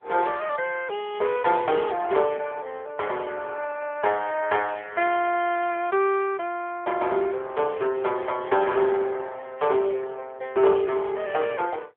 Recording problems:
phone line; 320 Hz to 3.4 kHz, AMR-NB

